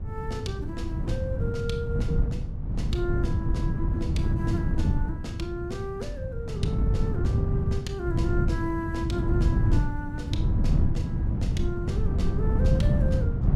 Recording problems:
wind noise; below 140 Hz, SNR -7 dB

